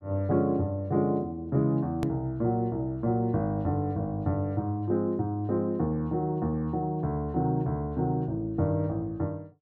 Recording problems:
click at an edit; at 2 s

